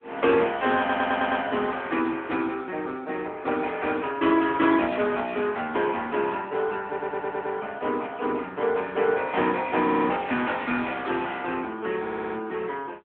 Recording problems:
phone line; 260 Hz to 3.6 kHz, AMR-NB
stutter; 4 times, first at 1 s

